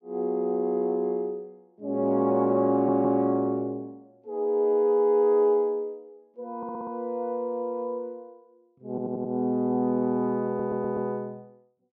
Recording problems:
stutter; 4 times, first at 2.5 s

